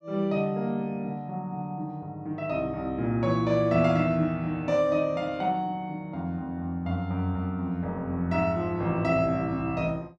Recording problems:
none

